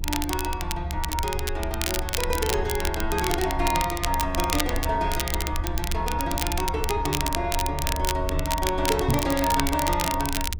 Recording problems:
rumble; below 74 Hz, SNR 6 dB
crackle; vinyl, SNR 3 dB
microphone bump; at 9 s; peak +6 dB vs average level

